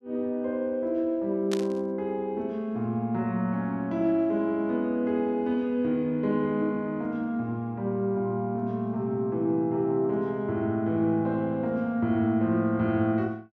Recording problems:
burst of static; at 1.5 s; peak -3 dB vs average level

